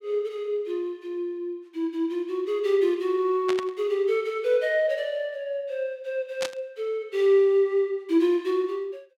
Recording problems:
static burst; at 3.5 s and at 6.5 s; peak -3 dB vs average level

